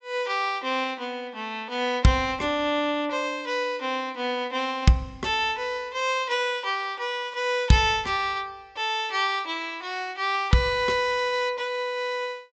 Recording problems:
treble missing; nothing above 8 kHz

